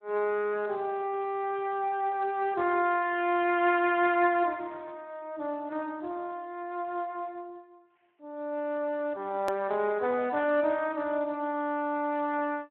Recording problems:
telephone audio; 260 Hz to 3.8 kHz, Speex
hard cut with a click; at 9.5 s

